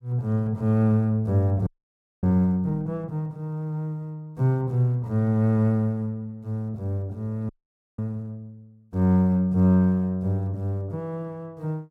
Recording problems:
audio freezing; at 1.5 s for 0.5 s and at 7.5 s

